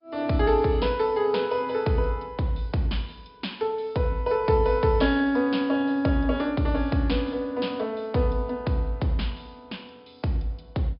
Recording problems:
low-pass filter; nothing above 5.2 kHz
lossy codec; MP2, log-spectral distance 3 dB

